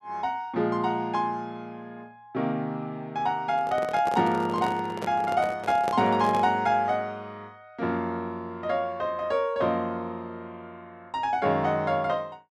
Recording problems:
handling noise; from 3.5 to 6.5 s; peak -2 dB vs average level

